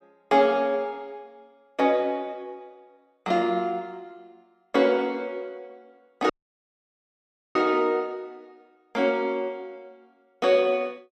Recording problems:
dropout; at 6.5 s for 1.5 s

